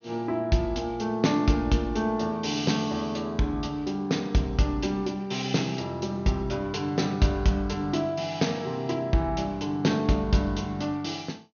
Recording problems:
low-pass filter; nothing above 6.5 kHz

